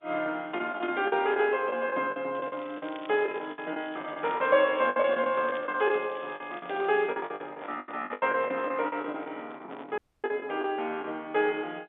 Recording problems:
phone line; 240 Hz to 3.6 kHz, G.711
packet loss; 13% of the sound replaced, filled with the last packet
crackle; from 2.5 to 5 s and from 5 to 7 s; loose cable, SNR 22 dB
microphone handling noise; from 6.5 to 10 s; peak -9 dB vs average level
dropout; at 10 s

